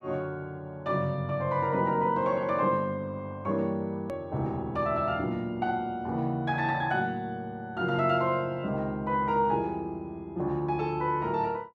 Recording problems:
hard cut with a click; at 4 s

